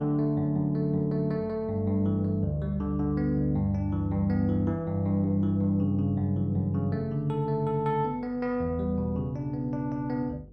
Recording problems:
hum; 50 Hz, harmonics up to 500 Hz, SNR 25 dB

